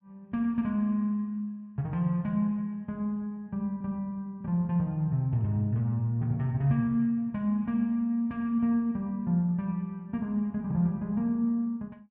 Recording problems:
none

